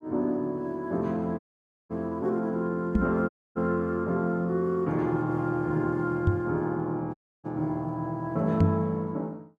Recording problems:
audio cutting out; at 1.5 s for 0.5 s, at 3.5 s and at 7 s
knock on the microphone; at 3 s, at 6.5 s and at 8.5 s; peak +8 dB vs average level

